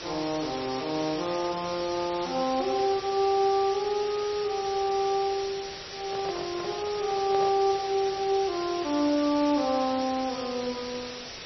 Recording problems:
lossy codec; MP3, log-spectral distance 12 dB, nothing above 5.5 kHz
hiss; SNR 10 dB
handling noise; from 6 to 7.5 s; peak -6 dB vs average level

